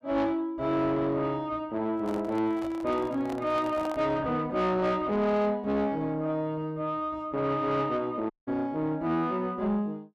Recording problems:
distortion; soft clipping, signal-to-distortion ratio 11 dB
microphone handling noise; from 2 to 4 s; peak -5 dB vs average level
dropout; at 8.5 s

